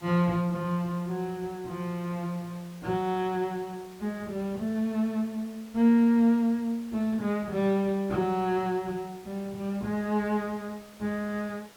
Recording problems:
hiss; slope -3 dB per octave, SNR 23 dB

